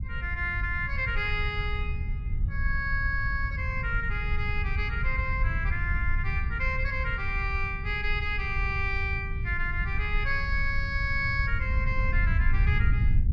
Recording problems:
rumble; below 86 Hz, SNR 1 dB

